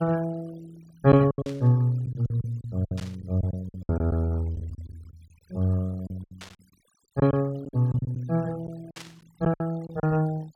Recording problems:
denoising artefacts; signal-to-artefact ratio 25 dB
lost packets; 12% of the sound replaced, filled with silence
static burst; 4 times, first at 1.5 s; peak -11 dB vs average level

